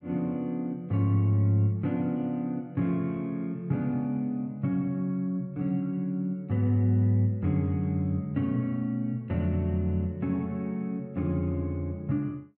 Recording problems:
none

